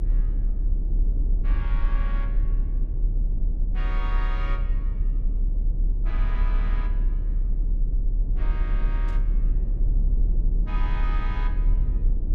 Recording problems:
low-frequency rumble; below 38 Hz, strongest tone 34 Hz, SNR -13 dB
burst of static; at 9 s; peak -10 dB vs average level

